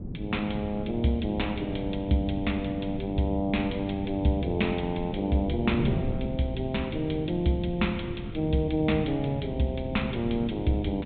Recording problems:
low-pass filter; nothing above 4 kHz
wind noise; below 230 Hz, SNR 7 dB

